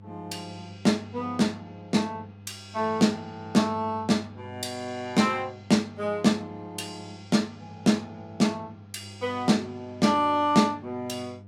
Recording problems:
electrical hum; 50 Hz, harmonics up to 700 Hz, SNR 20 dB

